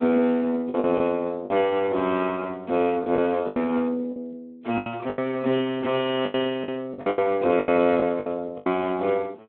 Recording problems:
phone line; 300 Hz to 3.4 kHz, Speex
packet loss; 10% of the sound replaced, filled with the last packet

